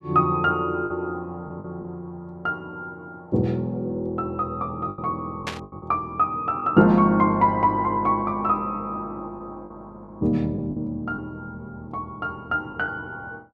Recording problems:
packet loss; 4% of the sound replaced, filled with the last packet
static burst; at 5.5 s; peak -1 dB vs average level

